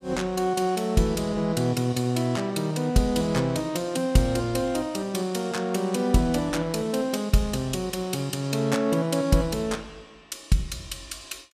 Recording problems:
none

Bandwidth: 15 kHz